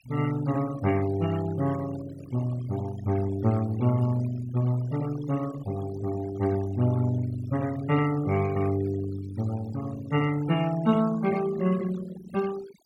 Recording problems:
denoising artefacts; signal-to-artefact ratio 16 dB

